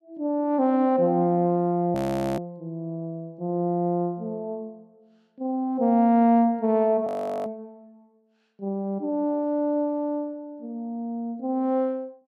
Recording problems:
audio freezing; at 2 s and at 7 s

